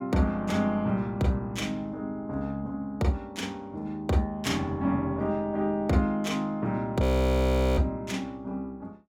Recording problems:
frozen audio; at 7 s for 1 s

